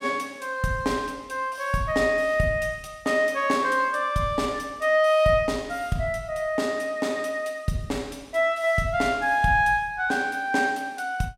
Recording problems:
none

